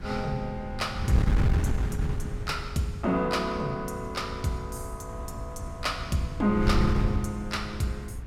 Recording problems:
wind noise; below 130 Hz, SNR 2 dB

